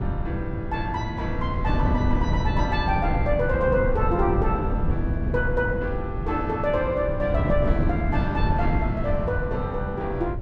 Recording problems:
rumble; below 130 Hz, SNR 10 dB
wind on the microphone; below 160 Hz, SNR 2 dB

